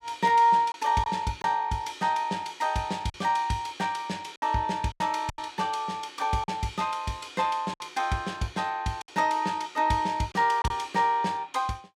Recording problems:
lost packets; 5% of the sound replaced, filled with silence

